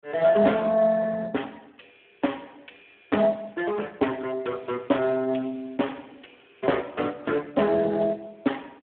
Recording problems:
phone line; 170 Hz to 3.4 kHz, Speex

